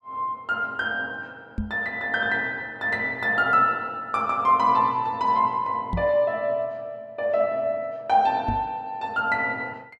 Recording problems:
microphone bump; at 1.5 s, at 6 s and at 8.5 s; peak 0 dB vs average level

